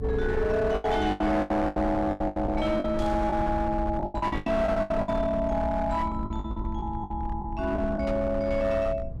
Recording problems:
distortion; hard clipping, signal-to-distortion ratio 12 dB
rumble; below 100 Hz, SNR 8 dB
lost packets; 14% of the sound replaced, filled with the last packet
static burst; at 3 s and at 8 s; peak -13 dB vs average level

